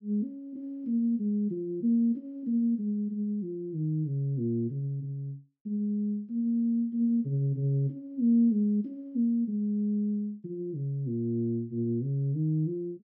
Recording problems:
none

